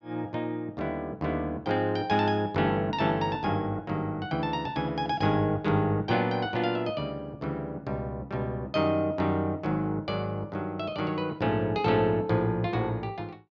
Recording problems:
none

